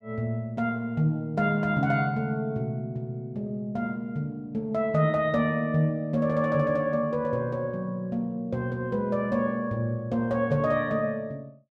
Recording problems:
none

